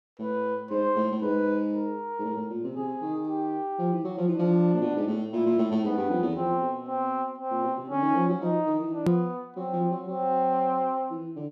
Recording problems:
hard cut with a click; at 9 s

